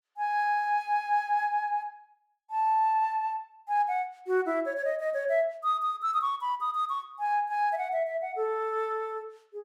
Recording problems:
none

